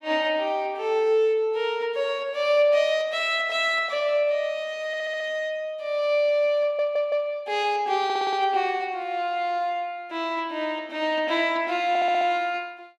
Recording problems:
audio stuttering; 4 times, first at 5 s

